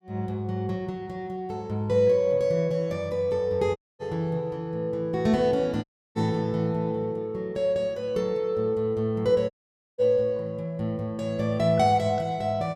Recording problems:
audio cutting out; at 4 s, at 6 s and at 9.5 s

